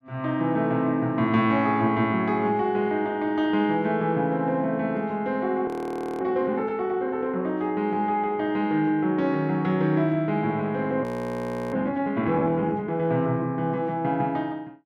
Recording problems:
frozen audio; at 5.5 s for 0.5 s and at 11 s for 0.5 s

